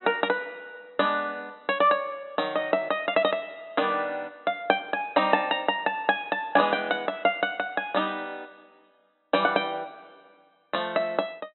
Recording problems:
treble missing; nothing above 4 kHz

